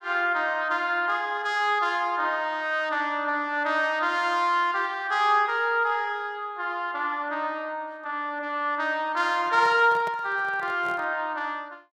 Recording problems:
handling noise; from 9.5 to 11 s; peak -9 dB vs average level

